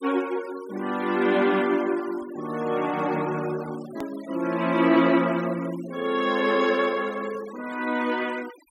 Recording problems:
denoising artefacts; signal-to-artefact ratio 19 dB
edit click; at 4 s

